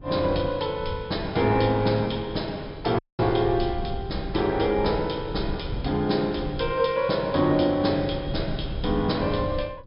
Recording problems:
treble missing; nothing above 5.5 kHz
wind noise; below 120 Hz, SNR 12 dB
audio cutting out; at 3 s

